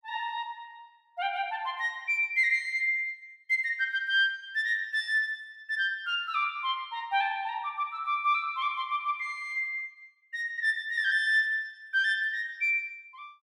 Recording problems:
none

